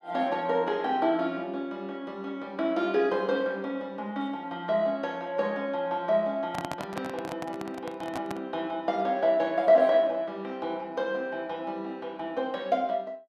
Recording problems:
handling noise; from 6.5 to 8.5 s; peak -1 dB vs average level

